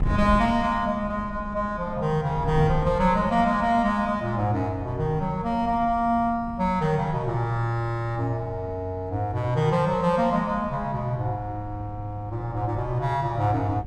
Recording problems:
wind noise; below 150 Hz, SNR 13 dB

